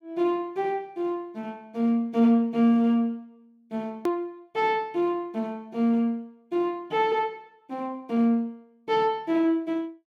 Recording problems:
hard cut with a click; at 4 s

